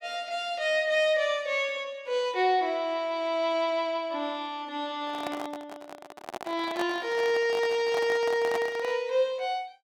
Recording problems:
microphone handling noise; from 5 to 9 s; peak -2 dB vs average level

